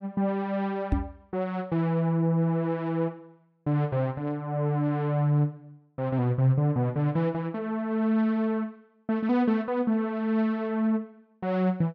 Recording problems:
microphone thump; at 1 s; peak +5 dB vs average level

